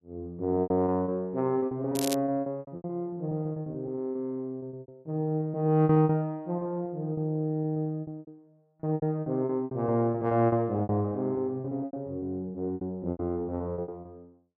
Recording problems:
lost packets; 19% of the sound replaced, filled with repeated pitch periods
crackle; at 2 s; loose cable, SNR 7 dB

